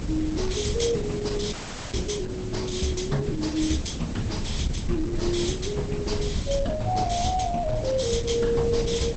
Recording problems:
lossy codec; Opus, log-spectral distance 6 dB, nothing above 8 kHz
background hiss; SNR 8 dB
low-frequency rumble; below 78 Hz, SNR 9 dB
audio cutting out; at 1.5 s

